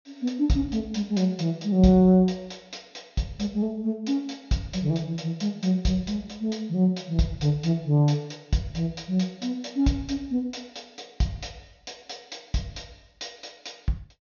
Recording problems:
treble missing; nothing above 6.6 kHz

